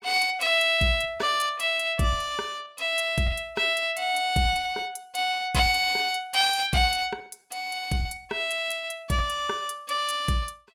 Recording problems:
lost packets; 10% of the sound replaced, filled with repeated pitch periods

